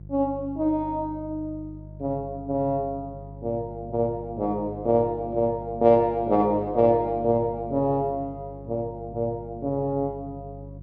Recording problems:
hum; 50 Hz, harmonics up to 500 Hz, SNR 16 dB

